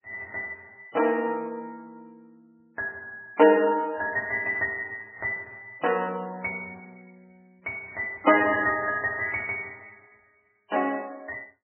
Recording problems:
lossy compression; MP3, log-spectral distance 3 dB, nothing above 3 kHz

